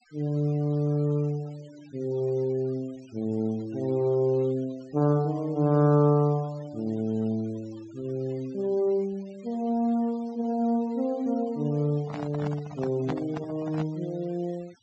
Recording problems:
low-pass filter; nothing above 8 kHz
noise reduction artefacts; signal-to-artefact ratio 26 dB
handling noise; from 12 to 14 s; peak -3 dB vs average level

